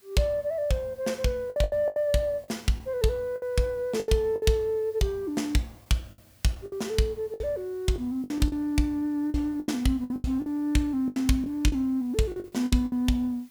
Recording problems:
background hiss; slope 0 dB per octave, SNR 29 dB
packet loss; 11% of the sound replaced, filled with the last packet

